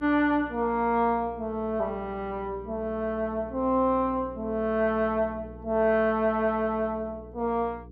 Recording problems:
hum; 60 Hz, harmonics up to 480 Hz, SNR 19 dB

